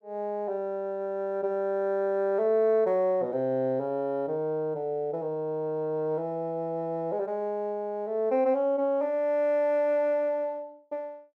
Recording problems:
none

